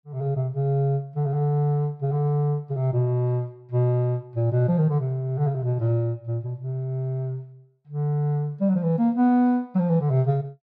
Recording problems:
none

